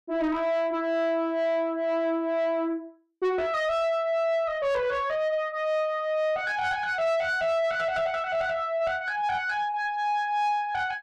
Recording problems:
distortion; soft clipping, signal-to-distortion ratio 11 dB

